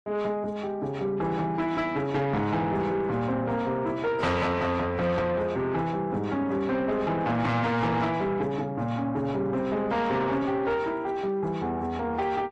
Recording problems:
lossy compression; AAC, log-spectral distance 2 dB, nothing above 10.1 kHz
distorted audio; soft clipping, signal-to-distortion ratio 10 dB

